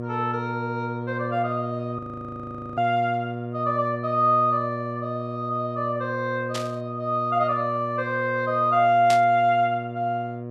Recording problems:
hum; 60 Hz, harmonics up to 1.2 kHz, SNR 9 dB
audio freezing; at 2 s for 1 s
static burst; at 6.5 s and at 9 s; peak -1 dB vs average level

